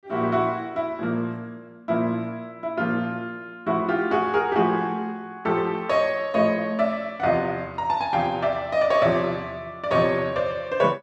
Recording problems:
none

